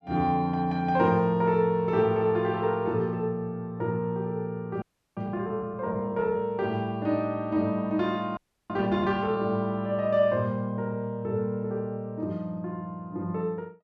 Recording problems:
audio freezing; at 5 s and at 8.5 s

